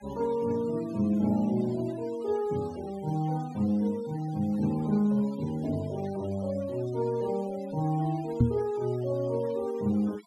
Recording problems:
noise reduction artefacts; signal-to-artefact ratio 21 dB
microphone thump; at 8.5 s; peak +9 dB vs average level

